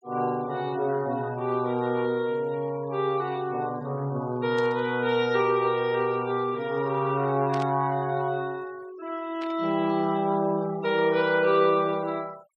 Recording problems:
denoising artefacts; signal-to-artefact ratio 25 dB
static burst; at 4.5 s, at 7.5 s and at 9.5 s; peak -11 dB vs average level

